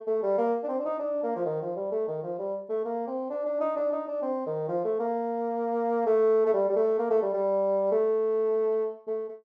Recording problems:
none

